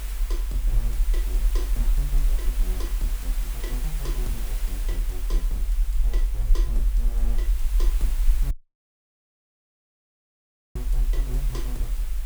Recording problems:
background hiss; slope -1 dB per octave, SNR 1 dB
low-frequency rumble; below 44 Hz, strongest tone 34 Hz, SNR -13 dB
audio cutting out; at 8.5 s for 2 s

